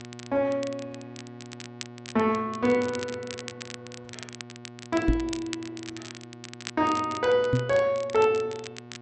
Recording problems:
low-pass filter; nothing above 8 kHz
hum; 60 Hz, harmonics up to 2.2 kHz, SNR 18 dB
crackling; vinyl, SNR 16 dB
microphone bump; at 5 s and at 7.5 s; peak +6 dB vs average level

